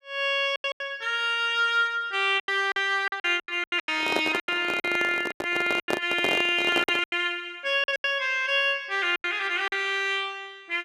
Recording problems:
lost packets; 12% of the sound replaced, filled with silence
handling noise; from 4 to 7 s; peak +1 dB vs average level

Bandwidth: 14.5 kHz